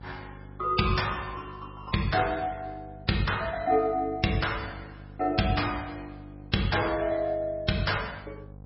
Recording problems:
lossy compression; MP3, log-spectral distance 4 dB, nothing above 5.5 kHz
mains hum; 50 Hz, harmonics up to 800 Hz, SNR 18 dB

